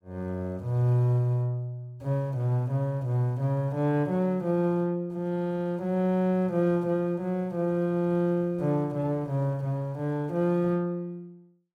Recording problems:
none

